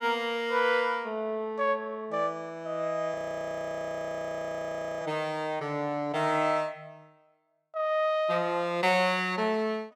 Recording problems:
frozen audio; at 3 s for 2 s

